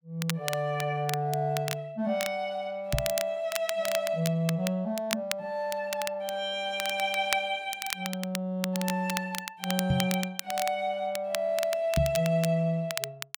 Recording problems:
crackling; vinyl, SNR 7 dB
microphone bump; at 3 s, at 10 s and at 12 s; peak +6 dB vs average level

